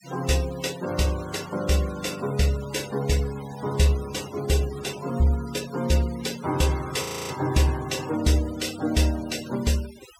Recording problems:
noise reduction artefacts; signal-to-artefact ratio 16 dB
frozen audio; at 7 s

